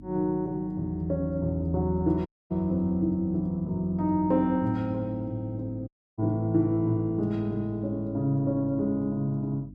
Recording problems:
hum; 50 Hz, harmonics up to 300 Hz, SNR 18 dB
audio cutting out; at 2.5 s and at 6 s

